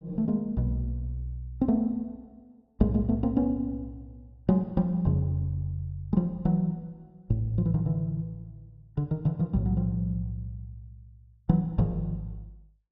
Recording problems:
none

